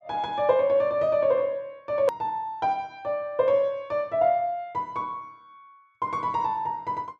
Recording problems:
edit click; at 2 s

